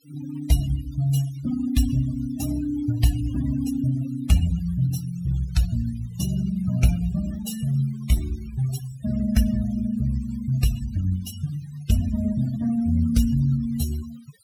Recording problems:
noise reduction artefacts; signal-to-artefact ratio 15 dB

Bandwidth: 18 kHz